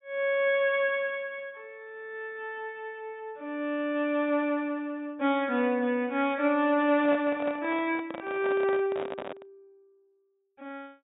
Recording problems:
treble missing; nothing above 4 kHz
microphone handling noise; from 7 to 9.5 s; peak -6 dB vs average level

